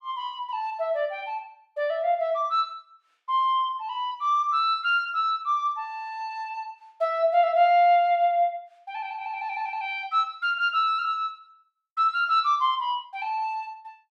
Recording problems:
none

